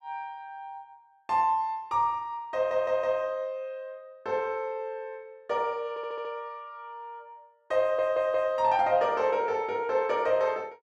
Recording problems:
audio stuttering; at 2.5 s, at 6 s and at 8 s

